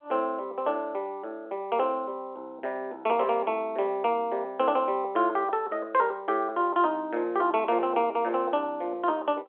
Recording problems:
telephone audio; 280 Hz to 3.5 kHz, G.711

